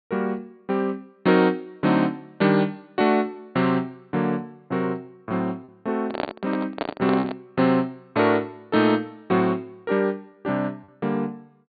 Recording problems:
treble missing; nothing above 4.6 kHz
lost packets; 0.5% of the sound replaced, filled with repeated pitch periods
microphone handling noise; from 6 to 7.5 s; peak +1 dB vs average level

